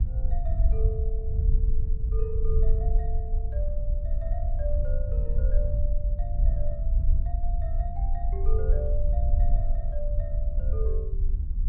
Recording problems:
wind on the microphone; below 58 Hz, SNR -12 dB

